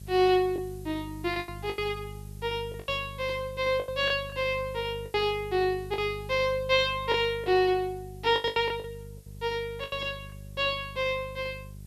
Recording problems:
hum; 50 Hz, harmonics up to 400 Hz, SNR 15 dB
hiss; slope +2 dB per octave, SNR 27 dB
lost packets; 8% of the sound replaced, filled with the last packet

